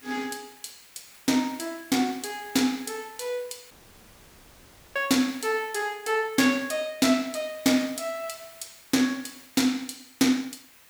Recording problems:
background hiss; SNR 22 dB
dropout; at 3.5 s for 1 s

